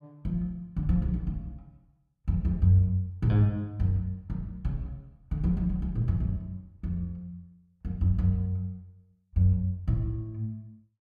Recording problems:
none

